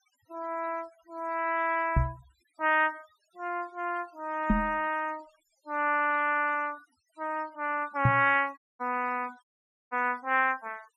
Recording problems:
denoising artefacts; signal-to-artefact ratio 26 dB
microphone bump; at 2 s, at 4.5 s and at 8 s; peak +8 dB vs average level
audio cutting out; at 8.5 s and at 9.5 s

